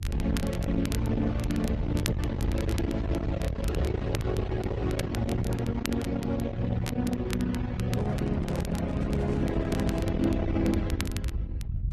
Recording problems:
lossy compression; Vorbis, then Opus, log-spectral distance 2 dB
distorted audio; soft clipping, signal-to-distortion ratio 11 dB
low-frequency rumble; below 130 Hz, SNR 3 dB
crackle; vinyl, SNR 14 dB
handling noise; from 8 to 10 s; peak -7 dB vs average level

